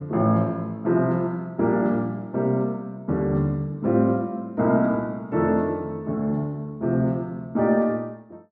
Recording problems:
none

